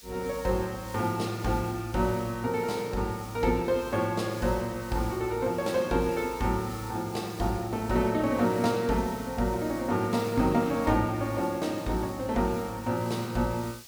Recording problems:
hiss; SNR 18 dB

